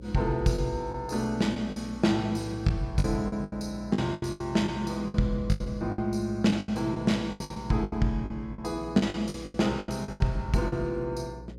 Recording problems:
hum; 60 Hz, harmonics up to 540 Hz, SNR 16 dB
packet loss; 14% of the sound replaced, filled with the last packet

